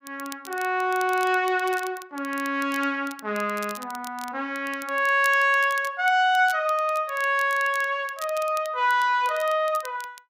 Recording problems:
crackling; vinyl, SNR 19 dB

